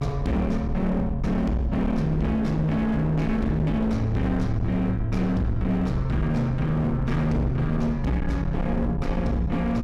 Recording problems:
distorted audio; hard clipping, uneven, signal-to-distortion ratio 7 dB
rumble; below 110 Hz, SNR 7 dB

